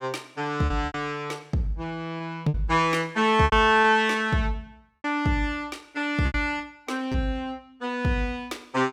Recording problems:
packet loss; 6% of the sound replaced, filled with repeated pitch periods

